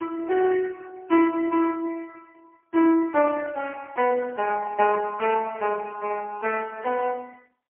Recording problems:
telephone audio; 260 Hz to 2.6 kHz, AMR-NB, then MP3

